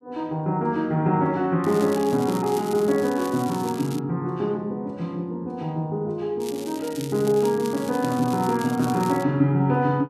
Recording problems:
crackle; from 1.5 to 4 s and from 6.5 to 9 s; loose cable, SNR 17 dB

